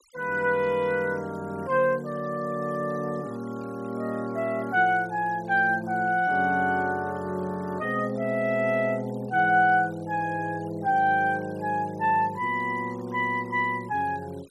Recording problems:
noise reduction artefacts; signal-to-artefact ratio 26 dB

